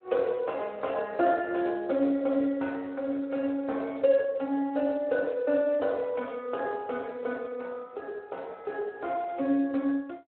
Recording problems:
phone line; 220 Hz to 3.7 kHz, Speex

